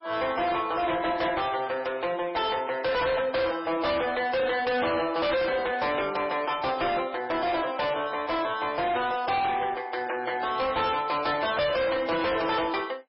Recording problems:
lossy compression; MP3, log-spectral distance 5 dB, nothing above 5.3 kHz
distortion; hard clipping, signal-to-distortion ratio 6 dB

